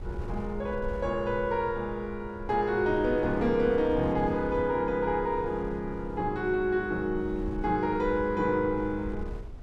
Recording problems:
wind noise; below 88 Hz, SNR 14 dB

